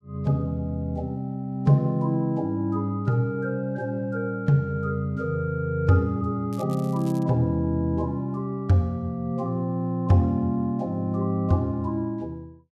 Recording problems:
crackling; at 6.5 s; loose cable, SNR 25 dB

